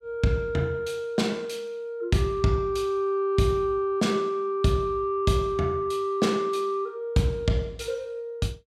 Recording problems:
none

